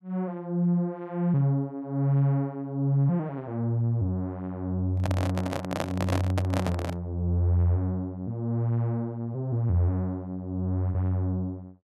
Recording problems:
handling noise; from 5 to 7 s; peak +2 dB vs average level

